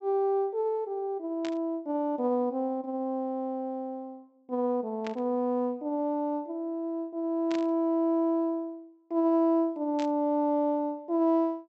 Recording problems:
treble cut off; nothing above 7.9 kHz
static burst; 4 times, first at 1.5 s; peak -8 dB vs average level

